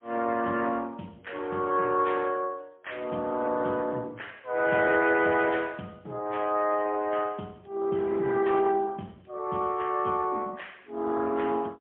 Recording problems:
phone line; 130 Hz to 3.4 kHz, AMR-NB, then MP3

